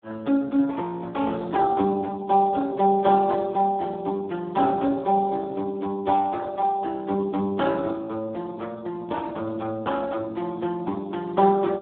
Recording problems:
telephone audio; 130 Hz to 2.5 kHz, Speex

